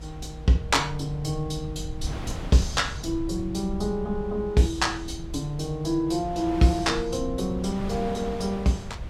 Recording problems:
low-frequency rumble; below 100 Hz, SNR 12 dB
wind on the microphone; below 920 Hz, SNR 16 dB

